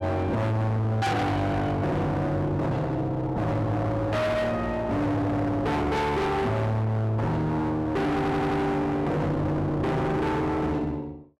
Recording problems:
distortion; hard clipping, uneven, signal-to-distortion ratio 5 dB
audio stuttering; at 8 s

